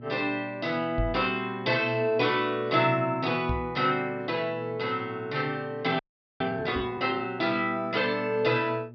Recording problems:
low-pass filter; nothing above 5.5 kHz
electrical hum; 60 Hz, harmonics up to 600 Hz, SNR 16 dB
microphone thump; at 1 s, at 3.5 s and at 7 s; peak 0 dB vs average level
frozen audio; at 6 s

